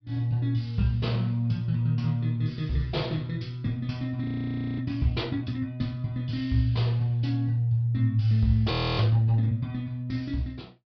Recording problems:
low-pass filter; nothing above 5.5 kHz
audio freezing; at 4 s for 0.5 s and at 8.5 s

